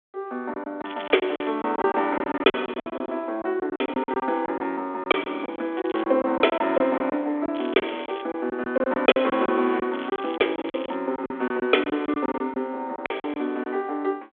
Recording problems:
phone line; 220 Hz to 3.5 kHz, G.726
lost packets; 14% of the sound replaced, filled with silence
crackling; 4 times, first at 1 s; loose cable, SNR 18 dB

